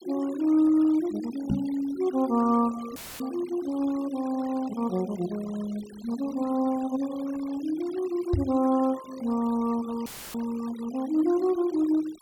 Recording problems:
noise reduction artefacts; signal-to-artefact ratio 20 dB
microphone bump; at 1.5 s and at 8.5 s; peak +5 dB vs average level
dropout; at 3 s and at 10 s; filled with static

